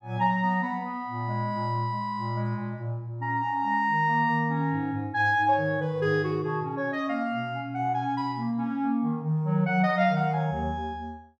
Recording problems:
none

